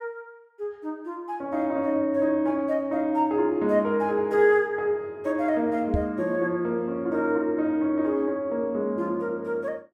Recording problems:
microphone bump; at 6 s; peak +2 dB vs average level

